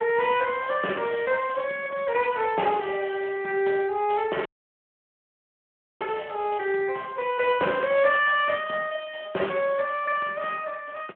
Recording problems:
telephone audio; 280 Hz to 3 kHz, Speex
dropout; at 4.5 s for 1.5 s

